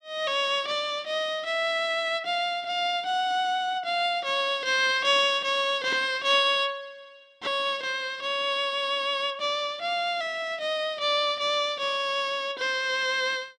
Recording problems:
none

